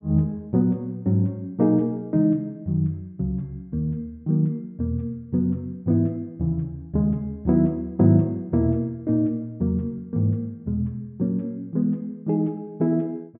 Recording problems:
low-pass filter; nothing above 3.6 kHz

